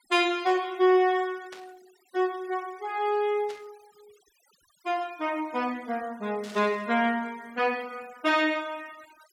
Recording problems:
noise reduction artefacts; signal-to-artefact ratio 25 dB
static burst; at 1.5 s, at 3.5 s and at 6.5 s; peak -13 dB vs average level

